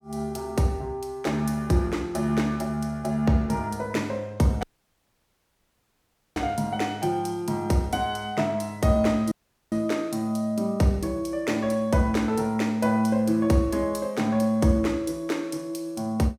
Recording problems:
audio cutting out; at 4.5 s for 1.5 s and at 9.5 s

